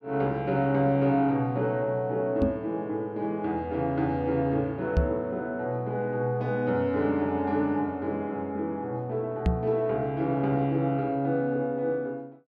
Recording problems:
microphone thump; at 2.5 s, at 5 s and at 9.5 s; peak +7 dB vs average level

